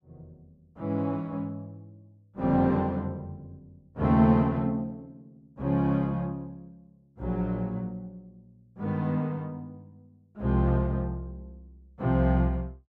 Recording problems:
none

